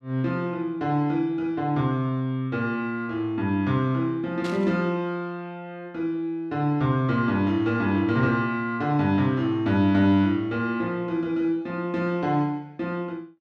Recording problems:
static burst; at 4.5 s; peak -8 dB vs average level

